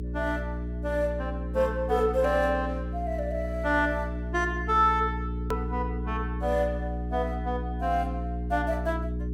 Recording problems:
electrical hum; 60 Hz, harmonics up to 420 Hz, SNR 5 dB
click at an edit; at 5.5 s

